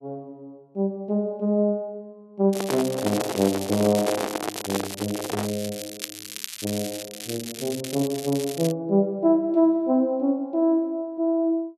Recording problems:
microphone handling noise; from 2.5 to 5.5 s; peak 0 dB vs average level
crackling; from 2.5 to 8.5 s; loose cable, SNR 10 dB

